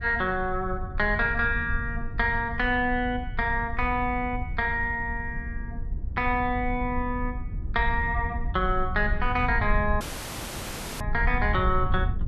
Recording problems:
rumble; below 76 Hz, SNR 6 dB
audio cutting out; at 10 s for 1 s

